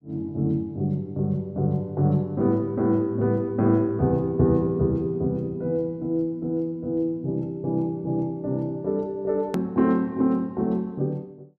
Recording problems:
edit click; at 9.5 s

